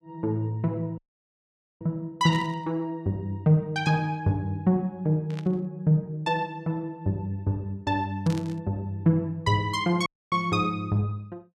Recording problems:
audio cutting out; at 1 s for 1 s and at 10 s
static burst; at 2.5 s, at 5.5 s and at 8.5 s; peak -11 dB vs average level

